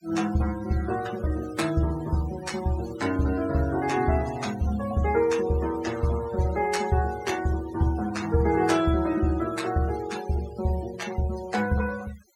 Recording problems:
noise reduction artefacts; signal-to-artefact ratio 15 dB

